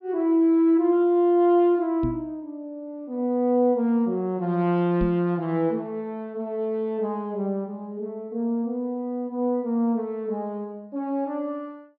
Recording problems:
treble missing; nothing above 5.5 kHz
microphone bump; at 2 s and at 5 s; peak -1 dB vs average level

